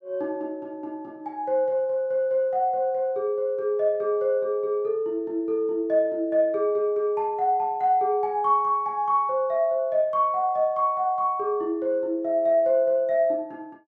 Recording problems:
none

